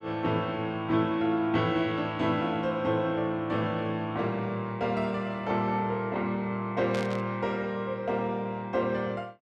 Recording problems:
burst of static; at 7 s; peak -6 dB vs average level

